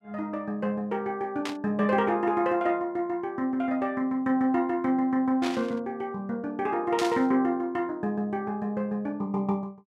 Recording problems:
static burst; at 1.5 s, at 5.5 s and at 7 s; peak -1 dB vs average level

